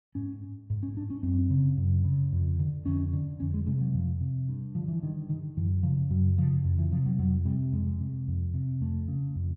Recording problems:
none

